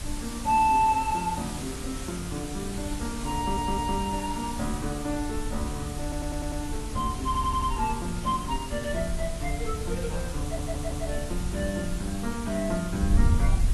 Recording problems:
lossy compression; AAC, log-spectral distance 8 dB
hiss; slope -2 dB per octave, SNR 9 dB
wind noise; below 80 Hz, SNR 5 dB
audio stuttering; 4 times, first at 3.5 s

